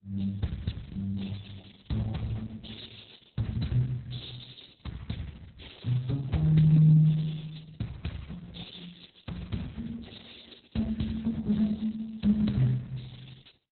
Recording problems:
lossy compression; Speex, then Opus, log-spectral distance 6 dB, nothing above 4.1 kHz

